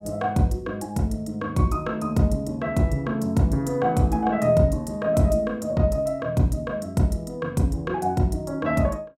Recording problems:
none

